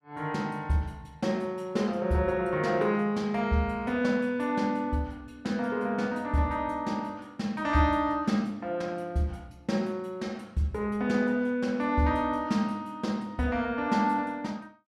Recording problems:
none

